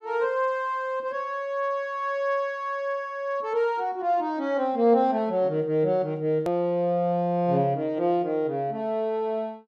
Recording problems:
edit click; at 6.5 s

